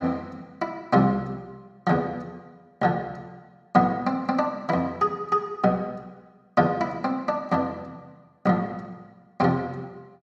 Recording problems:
none

